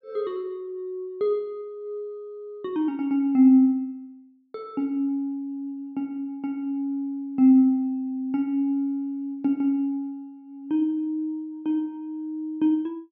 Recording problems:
none

